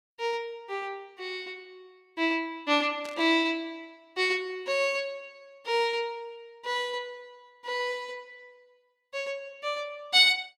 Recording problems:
static burst; at 3 s; peak -11 dB vs average level

